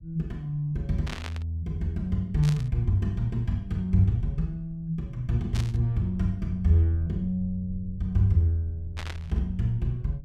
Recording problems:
low-frequency rumble; below 86 Hz, SNR 18 dB
burst of static; 4 times, first at 1 s; peak -5 dB vs average level

